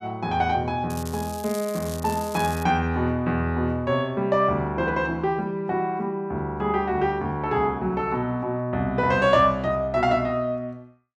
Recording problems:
crackle; from 1 to 2.5 s; loose cable, SNR 15 dB

